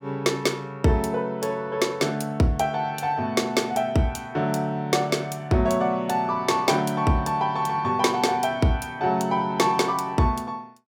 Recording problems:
none

